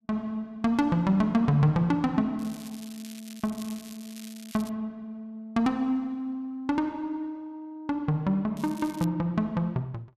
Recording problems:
crackling; from 2.5 to 4.5 s and at 8.5 s; loose cable, SNR 19 dB

